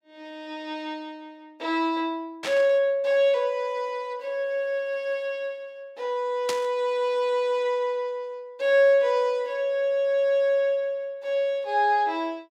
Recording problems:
static burst; at 2.5 s and at 6.5 s; peak -1 dB vs average level

